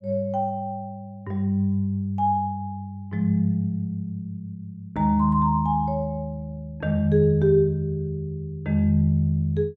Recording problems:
none

